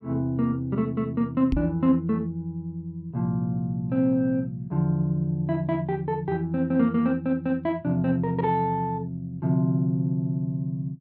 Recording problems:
microphone bump; at 1.5 s; peak +3 dB vs average level

